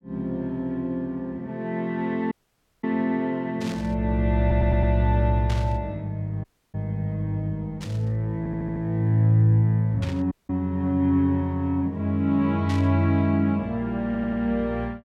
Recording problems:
dropout; at 2.5 s for 0.5 s, at 6.5 s and at 10 s
static burst; 5 times, first at 3.5 s; peak -9 dB vs average level
audio stuttering; at 4.5 s, at 8.5 s and at 14 s

